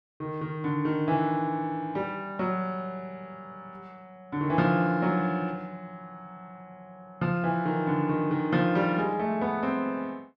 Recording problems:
none

